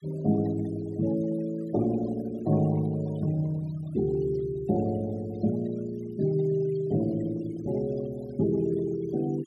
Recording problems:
denoising artefacts; signal-to-artefact ratio 19 dB

